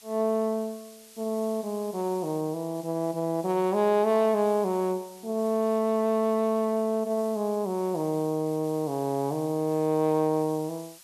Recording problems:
background hiss; slope +3 dB per octave, SNR 22 dB

